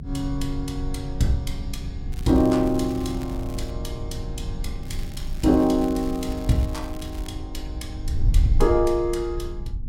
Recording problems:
low-frequency rumble; below 96 Hz, strongest tone 22 Hz, SNR 13 dB
wind noise; below 78 Hz, SNR 8 dB
crackle; from 2 to 3.5 s and from 5 to 7.5 s; loose cable, SNR 23 dB

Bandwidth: 16 kHz